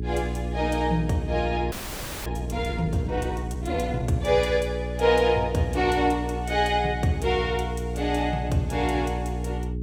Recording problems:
mains hum; 60 Hz, harmonics up to 420 Hz, SNR 6 dB
audio freezing; at 1.5 s for 0.5 s

